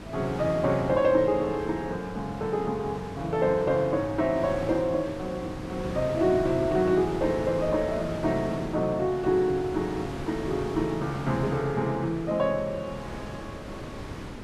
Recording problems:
wind on the microphone; below 880 Hz, SNR 11 dB

